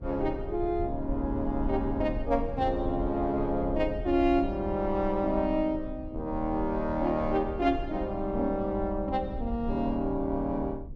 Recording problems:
rumble; below 78 Hz, SNR 10 dB

